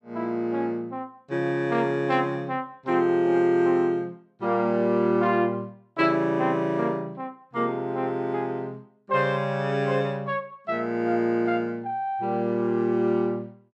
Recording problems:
none

